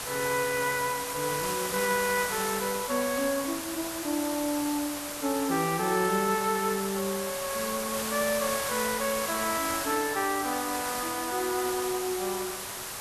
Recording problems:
background hiss; SNR 3 dB

